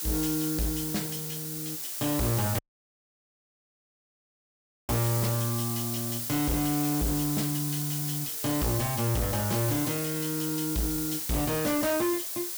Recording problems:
distortion; hard clipping, signal-to-distortion ratio 6 dB
background hiss; slope +2 dB per octave, SNR 2 dB
audio cutting out; at 2.5 s for 2.5 s

